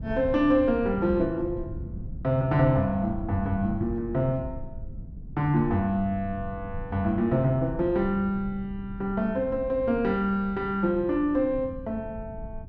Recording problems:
rumble; below 140 Hz, SNR 13 dB

